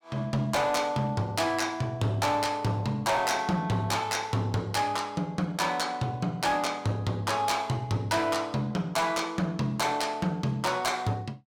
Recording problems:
distortion; hard clipping, uneven, signal-to-distortion ratio 12 dB

